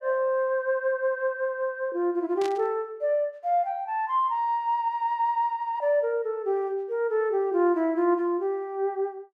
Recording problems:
burst of static; at 2.5 s; peak -8 dB vs average level

